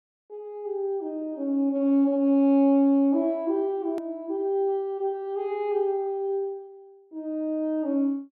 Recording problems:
edit click; at 4 s

